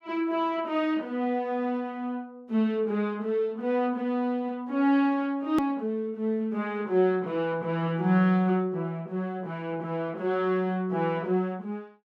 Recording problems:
click at an edit; at 5.5 s

